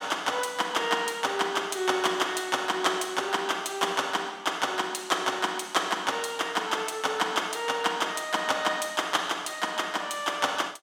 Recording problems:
none

